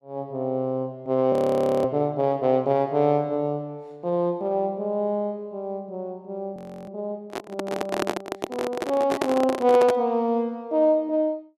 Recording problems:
audio freezing; at 1.5 s for 0.5 s and at 6.5 s
handling noise; from 7.5 to 10 s; peak +3 dB vs average level

